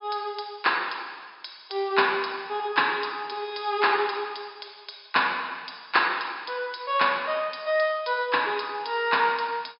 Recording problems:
treble missing; nothing above 5.5 kHz

